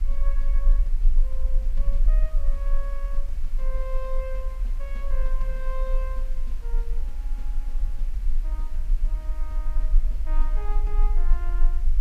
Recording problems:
electrical hum; 50 Hz, harmonics up to 350 Hz, SNR 17 dB
hiss; slope -2 dB per octave, SNR 13 dB
low-frequency rumble; below 34 Hz, strongest tone 20 Hz, SNR -14 dB

